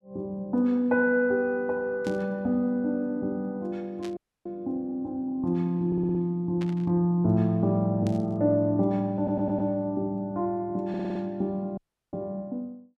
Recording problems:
static burst; 4 times, first at 2 s; peak -11 dB vs average level
dropout; at 4 s and at 12 s
audio stuttering; at 6 s, at 9 s and at 11 s

